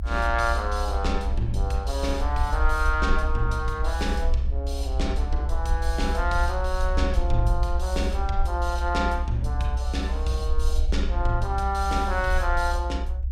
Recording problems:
rumble; below 64 Hz, SNR 0 dB

